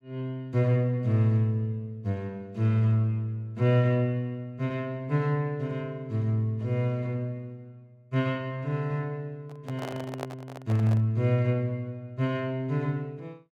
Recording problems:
handling noise; from 9.5 to 11 s; peak -3 dB vs average level

